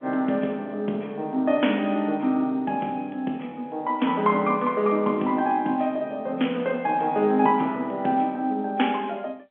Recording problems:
telephone audio; 170 Hz to 3.4 kHz, G.711

